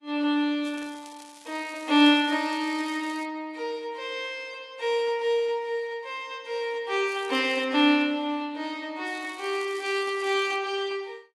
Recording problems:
lossy compression; AAC, log-spectral distance 3 dB
crackle; from 0.5 to 3 s, at 7 s and from 9 to 11 s; loose cable, SNR 22 dB

